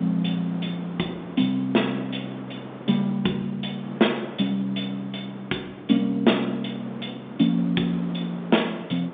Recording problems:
phone line; 170 Hz to 3.7 kHz, G.711
wind noise; below 800 Hz, SNR 15 dB

